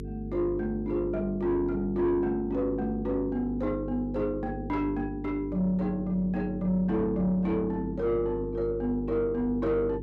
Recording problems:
distortion; soft clipping, signal-to-distortion ratio 11 dB
hum; 50 Hz, harmonics up to 450 Hz, SNR 10 dB

